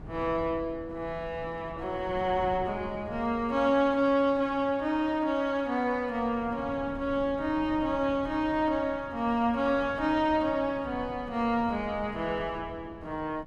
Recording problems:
wind noise; below 310 Hz, SNR 17 dB

